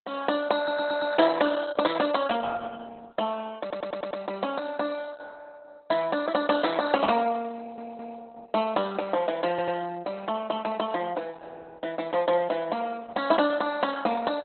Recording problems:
lossy codec; Opus, log-spectral distance 4 dB, nothing above 4.1 kHz
stutter; 4 times, first at 0.5 s

